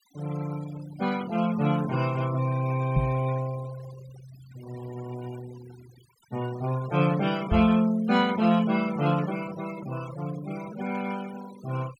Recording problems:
noise reduction artefacts; signal-to-artefact ratio 18 dB
microphone bump; at 3 s and at 7.5 s; peak +4 dB vs average level

